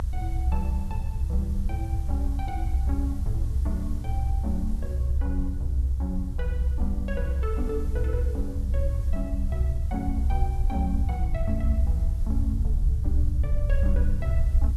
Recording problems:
background hiss; SNR 19 dB
low-frequency rumble; below 68 Hz, SNR -8 dB

